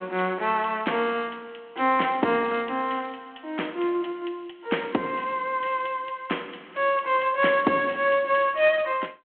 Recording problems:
phone line; 220 Hz to 3.4 kHz, G.726

